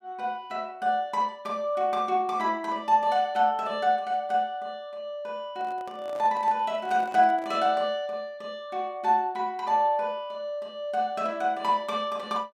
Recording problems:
microphone handling noise; from 5.5 to 7.5 s; peak -12 dB vs average level

